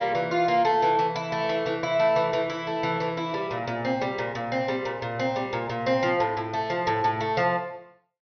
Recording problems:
treble cut off; nothing above 6.2 kHz

